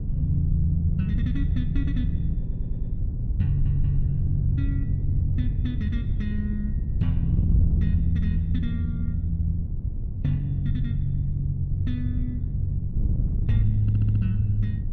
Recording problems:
wind on the microphone; below 100 Hz, SNR 1 dB
audio stuttering; at 2.5 s, at 3.5 s and at 14 s

